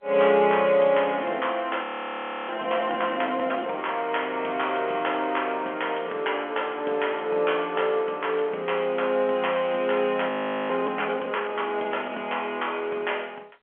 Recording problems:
telephone audio; 300 Hz to 3.4 kHz, G.711
audio freezing; at 2 s for 0.5 s and at 10 s

